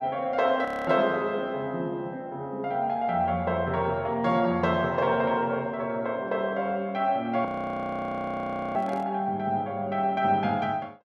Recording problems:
frozen audio; at 0.5 s and at 7.5 s for 1.5 s
microphone handling noise; at 9 s; peak -10 dB vs average level

